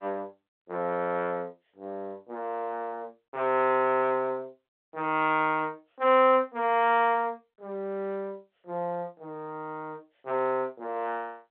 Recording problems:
telephone audio; 280 Hz to 3.9 kHz, G.711

